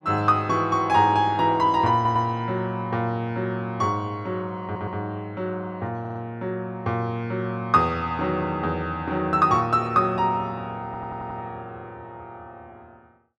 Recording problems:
stutter; 4 times, first at 2 s

